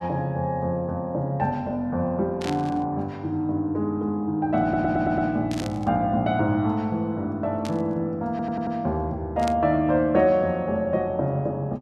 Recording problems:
static burst; 4 times, first at 2.5 s; peak -6 dB vs average level
stutter; at 4.5 s and at 8.5 s

